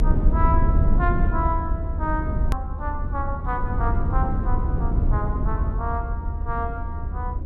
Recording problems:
low-frequency rumble; below 88 Hz, SNR -5 dB
edit click; at 2.5 s

